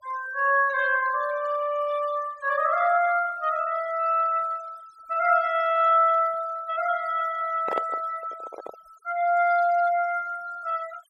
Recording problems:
denoising artefacts; signal-to-artefact ratio 22 dB
handling noise; from 7.5 to 9 s; peak -2 dB vs average level

